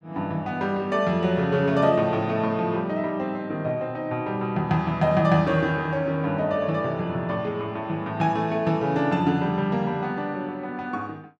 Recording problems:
none

